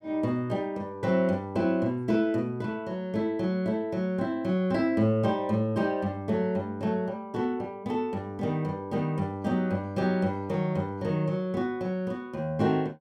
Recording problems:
none

